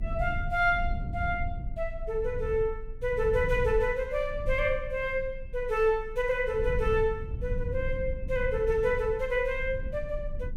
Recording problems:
low-frequency rumble; below 78 Hz, strongest tone 24 Hz, SNR 8 dB

